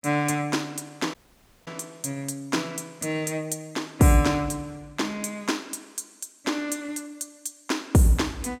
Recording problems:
dropout; at 1 s for 0.5 s

